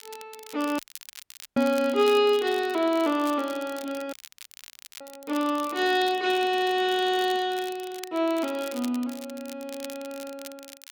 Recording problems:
crackling; vinyl, SNR 18 dB
dropout; at 1 s for 1 s and at 4 s for 1 s

